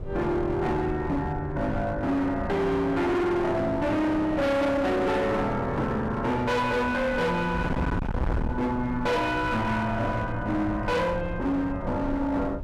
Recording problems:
distorted audio; hard clipping, signal-to-distortion ratio 7 dB
wind noise; below 220 Hz, SNR 10 dB

